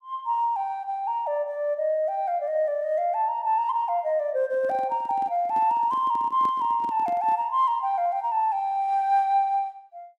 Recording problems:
microphone handling noise; from 4.5 to 7.5 s; peak -11 dB vs average level

